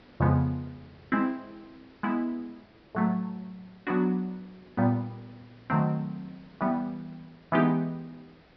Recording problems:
treble missing; nothing above 5.5 kHz
background hiss; SNR 27 dB

